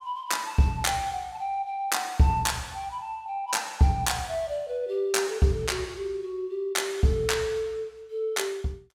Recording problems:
none

